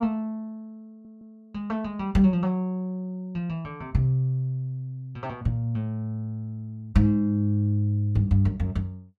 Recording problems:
audio stuttering; at 1 s

